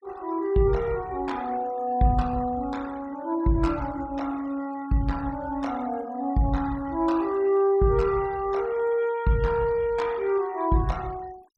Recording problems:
denoising artefacts; signal-to-artefact ratio 23 dB

